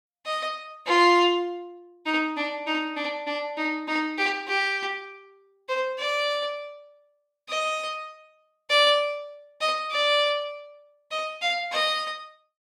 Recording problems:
none

